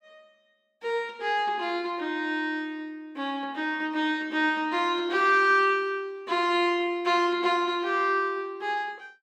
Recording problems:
none

